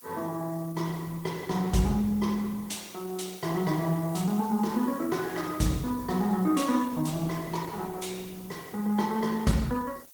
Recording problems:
lossy codec; Opus, log-spectral distance 6 dB
hiss; slope +3 dB per octave, SNR 18 dB

